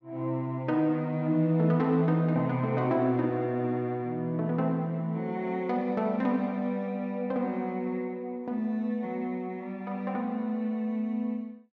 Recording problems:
none

